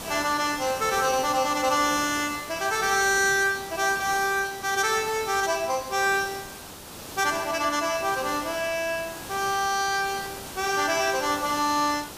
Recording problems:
hiss; SNR 13 dB

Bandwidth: 15 kHz